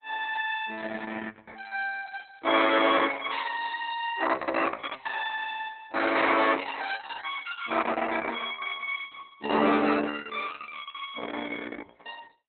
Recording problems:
lossy codec; Opus, log-spectral distance 6 dB, nothing above 3.6 kHz

